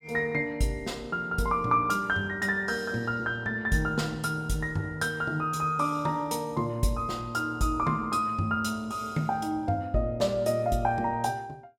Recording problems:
none

